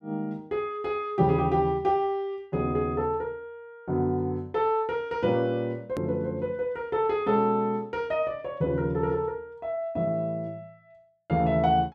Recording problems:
click at an edit; at 6 s

